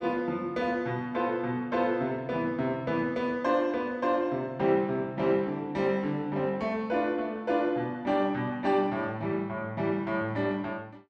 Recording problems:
none

